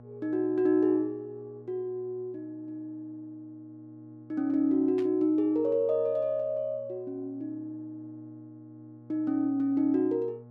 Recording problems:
hum; 60 Hz, harmonics up to 1.1 kHz, SNR 23 dB
static burst; at 5 s; peak -14 dB vs average level

